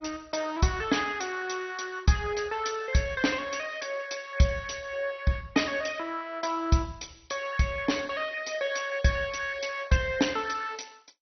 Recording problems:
lossy codec; MP2, log-spectral distance 7 dB, nothing above 6 kHz

